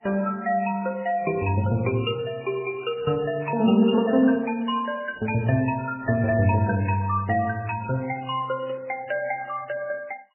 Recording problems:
codec artefacts; Vorbis, then MP3, log-spectral distance 3 dB, nothing above 2.6 kHz

